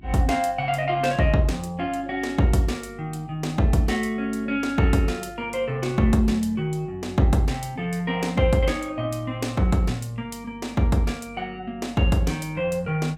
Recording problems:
electrical hum; 50 Hz, harmonics up to 400 Hz, SNR 23 dB

